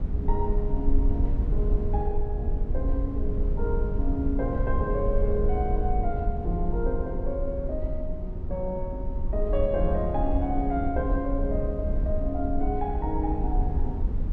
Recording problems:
rumble; below 66 Hz, SNR -1 dB

